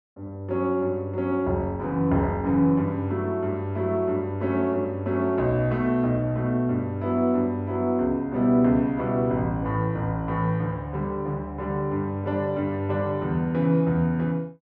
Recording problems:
none

